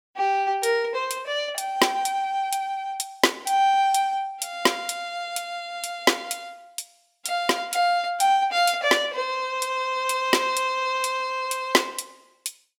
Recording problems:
none

